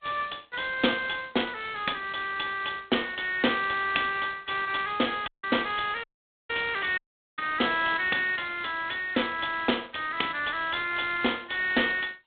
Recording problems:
phone line; 240 Hz to 3.7 kHz, G.726
dropout; at 5.5 s, at 6 s and at 7 s

